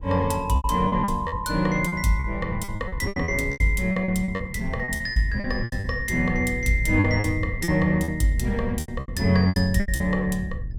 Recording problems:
wind on the microphone; below 110 Hz, SNR 10 dB
packet loss; 15% of the sound replaced, filled with repeated pitch periods

